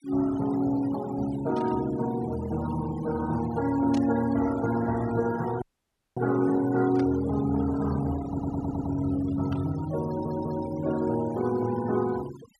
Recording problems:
denoising artefacts; signal-to-artefact ratio 16 dB
burst of static; 4 times, first at 1.5 s; peak -12 dB vs average level
audio cutting out; at 5.5 s for 0.5 s
audio stuttering; at 8.5 s and at 10 s

